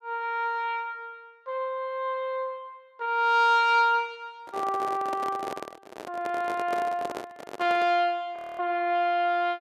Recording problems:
microphone handling noise; from 4.5 to 8 s; peak -4 dB vs average level
frozen audio; at 8.5 s

